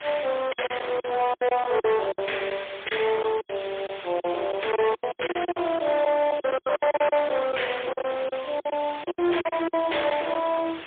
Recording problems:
telephone audio; 300 Hz to 3.4 kHz, AMR-NB, then MP3
distortion; hard clipping, signal-to-distortion ratio 9 dB
background hiss; SNR 13 dB
packet loss; 14% of the sound replaced, filled with silence

